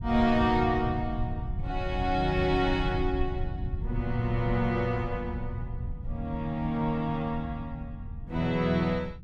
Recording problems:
low-frequency rumble; below 110 Hz, SNR 7 dB

